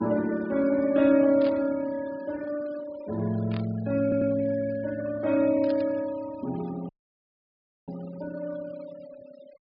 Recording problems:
treble cut off; nothing above 5.5 kHz
noise reduction artefacts; signal-to-artefact ratio 21 dB
burst of static; at 1.5 s, at 3.5 s and at 5.5 s; peak -12 dB vs average level
stutter; at 4 s
audio cutting out; at 7 s for 1 s

